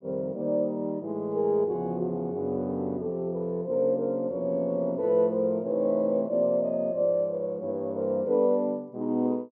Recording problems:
none

